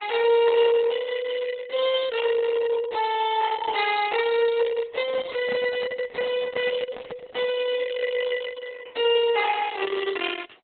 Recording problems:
lossy codec; Opus, log-spectral distance 5 dB, nothing above 3.9 kHz
handling noise; from 5 to 7.5 s; peak -6 dB vs average level

